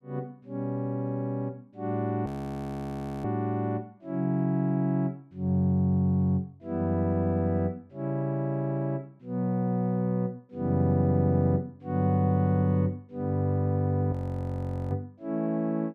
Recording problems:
audio freezing; at 2.5 s for 1 s and at 14 s for 1 s

